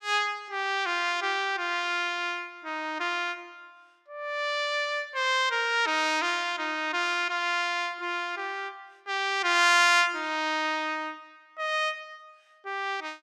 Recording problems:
none

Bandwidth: 15 kHz